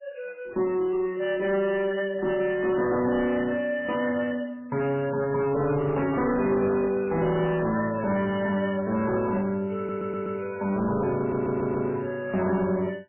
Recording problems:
codec artefacts; MP3, log-spectral distance 3 dB, nothing above 2.7 kHz
distortion; soft clipping, signal-to-distortion ratio 10 dB
stutter; at 10 s and at 11 s

